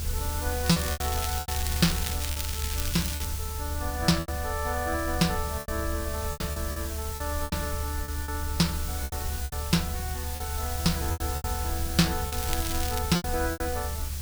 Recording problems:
background hiss; slope +1 dB per octave, SNR 5 dB
rumble; below 76 Hz, strongest tone 74 Hz, SNR 3 dB
lost packets; 10% of the sound replaced, filled with repeated pitch periods
crackle; from 0.5 to 3.5 s and at 12 s; loose cable, SNR 4 dB

